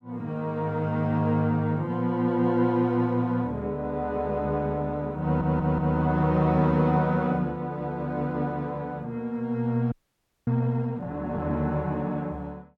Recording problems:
stutter; at 5 s
audio freezing; at 10 s for 0.5 s

